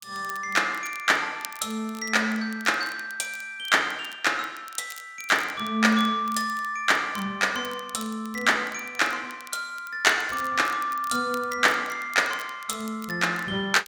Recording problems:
crackling; vinyl, SNR 20 dB

